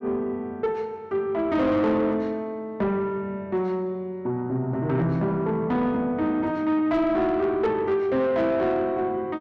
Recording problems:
distortion; soft clipping, signal-to-distortion ratio 11 dB

